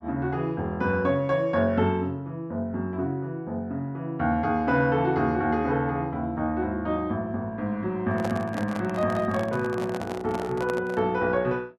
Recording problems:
handling noise; from 8 to 11 s; peak -3 dB vs average level

